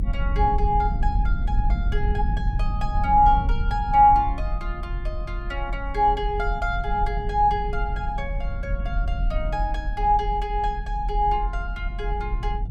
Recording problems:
rumble; below 60 Hz, strongest tone 42 Hz, SNR 4 dB

